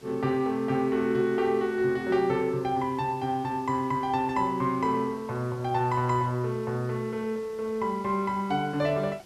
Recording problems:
hiss; slope -3 dB per octave, SNR 25 dB

